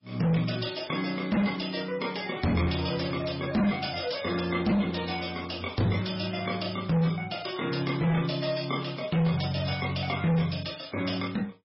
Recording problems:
lossy codec; MP3, log-spectral distance 10 dB, nothing above 5.3 kHz
distortion; hard clipping, signal-to-distortion ratio 8 dB

